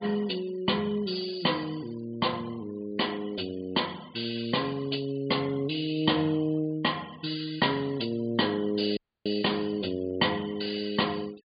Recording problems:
treble cut off; nothing above 4.8 kHz
noise reduction artefacts; signal-to-artefact ratio 23 dB
dropout; at 9 s

